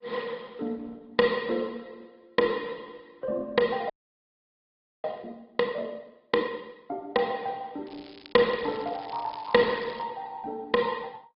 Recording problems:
low-pass filter; nothing above 4.6 kHz
lossy codec; Opus, log-spectral distance 3 dB
frozen audio; at 4 s for 1 s
crackling; from 8 to 10 s; loose cable, SNR 22 dB

